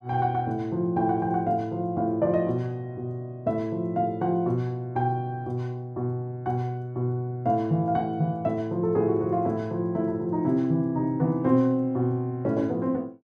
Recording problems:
none

